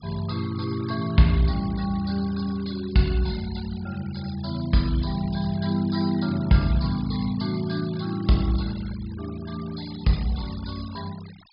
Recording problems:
low-pass filter; nothing above 5.5 kHz
denoising artefacts; signal-to-artefact ratio 19 dB

